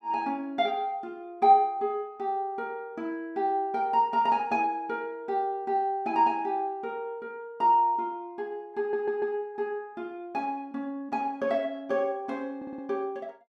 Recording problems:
audio stuttering; at 9 s and at 13 s

